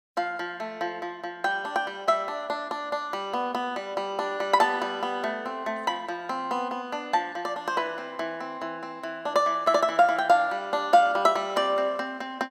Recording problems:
none

